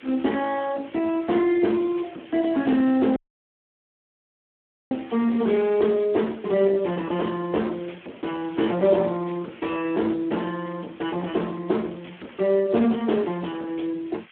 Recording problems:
phone line; 190 Hz to 3.4 kHz, Speex
distortion; soft clipping, signal-to-distortion ratio 13 dB
hiss; SNR 23 dB
dropout; at 3 s for 2 s

